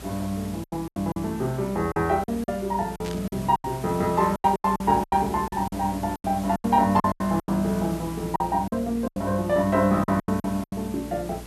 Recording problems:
mains hum; 60 Hz, harmonics up to 420 Hz, SNR 18 dB
hiss; slope -4 dB per octave, SNR 17 dB
lost packets; 14% of the sound replaced, filled with silence
burst of static; at 3 s; peak -10 dB vs average level

